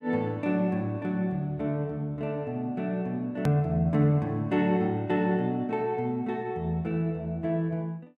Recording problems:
click at an edit; at 3.5 s

